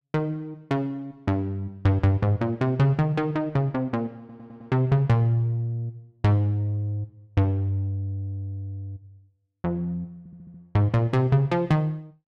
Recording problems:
audio stuttering; at 4 s and at 10 s

